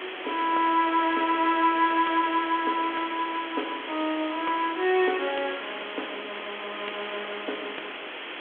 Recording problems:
telephone audio; 280 Hz to 3.4 kHz, G.726
background hiss; SNR 9 dB

